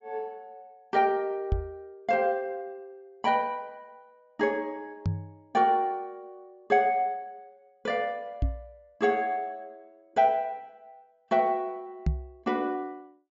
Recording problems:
treble cut off; nothing above 8 kHz
knock on the microphone; 4 times, first at 1.5 s; peak +5 dB vs average level

